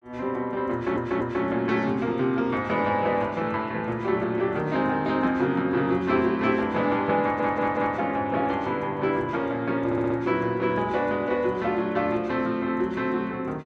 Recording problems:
audio stuttering; at 0.5 s, at 7 s and at 10 s

